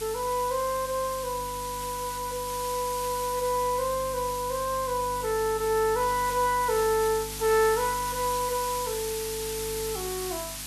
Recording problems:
hum; 50 Hz, harmonics up to 300 Hz, SNR 17 dB
hiss; slope +2 dB per octave, SNR 8 dB

